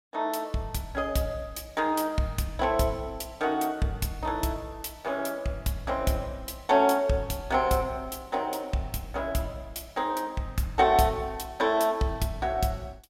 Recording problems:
none

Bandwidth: 16 kHz